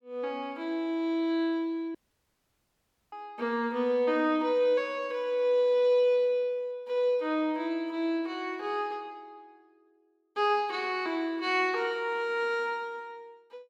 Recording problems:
dropout; at 2 s for 1 s

